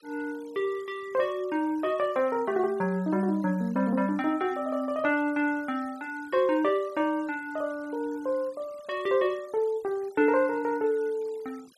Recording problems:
denoising artefacts; signal-to-artefact ratio 26 dB

